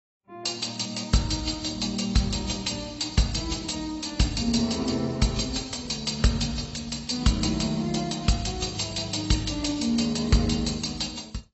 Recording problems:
codec artefacts; AAC, log-spectral distance 8 dB, nothing above 7.8 kHz

